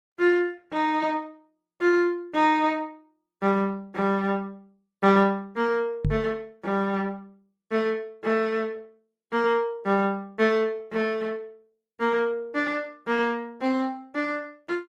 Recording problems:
codec artefacts; Opus, log-spectral distance 2 dB
microphone bump; at 6 s; peak +3 dB vs average level

